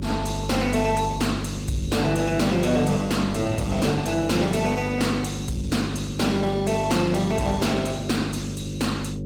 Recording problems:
lossy codec; Opus, log-spectral distance 4 dB, nothing above 19 kHz
distortion; soft clipping, signal-to-distortion ratio 11 dB
hum; 50 Hz, harmonics up to 550 Hz, SNR 4 dB

